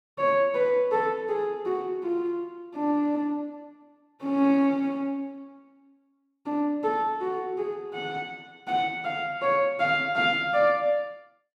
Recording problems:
none

